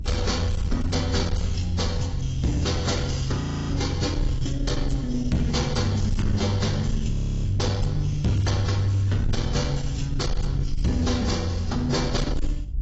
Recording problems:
lossy codec; AAC, log-spectral distance 3 dB, nothing above 7.6 kHz
distortion; soft clipping, signal-to-distortion ratio 10 dB
low-frequency rumble; below 90 Hz, SNR 10 dB
wind on the microphone; below 70 Hz, SNR 8 dB
audio freezing; at 3.5 s and at 7 s

